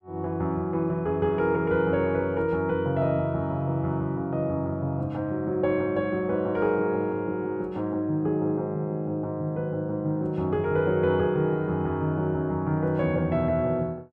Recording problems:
none

